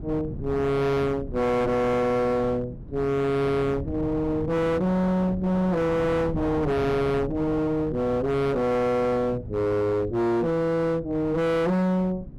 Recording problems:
distorted audio; hard clipping, signal-to-distortion ratio 6 dB
wind noise; below 270 Hz, SNR 13 dB

